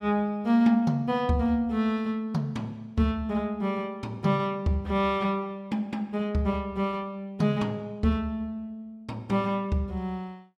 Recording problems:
none

